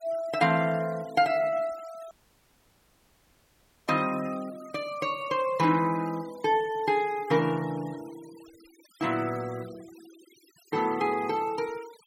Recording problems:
denoising artefacts; signal-to-artefact ratio 22 dB
dropout; at 2 s for 2 s

